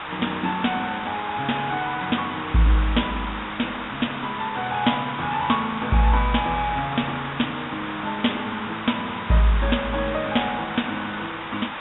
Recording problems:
treble cut off; nothing above 3.7 kHz
background hiss; SNR 7 dB

